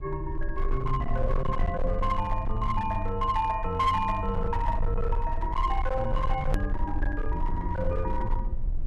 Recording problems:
distorted audio; hard clipping, uneven, signal-to-distortion ratio 12 dB
rumble; below 52 Hz, strongest tone 24 Hz, SNR 3 dB
click at an edit; at 6.5 s

